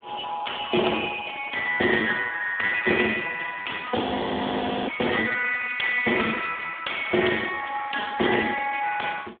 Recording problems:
telephone audio; 240 Hz to 2.9 kHz, Speex
audio freezing; at 4 s for 1 s

